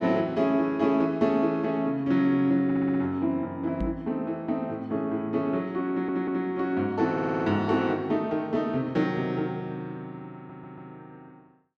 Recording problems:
stutter; 4 times, first at 2.5 s
microphone thump; at 4 s; peak -1 dB vs average level

